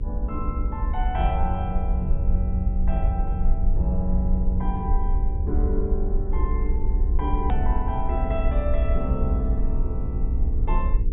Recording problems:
low-pass filter; nothing above 4 kHz
hum; 60 Hz, harmonics up to 480 Hz, SNR 5 dB
rumble; below 58 Hz, SNR -5 dB
click at an edit; at 7.5 s

